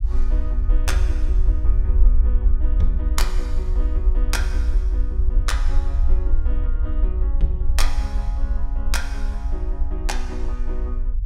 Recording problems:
low-frequency rumble; below 52 Hz, SNR -10 dB

